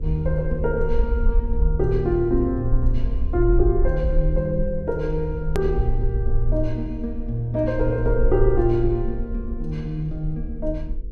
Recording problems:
electrical hum; 50 Hz, harmonics up to 500 Hz, SNR 20 dB
rumble; below 50 Hz, SNR 3 dB
hard cut with a click; at 5.5 s

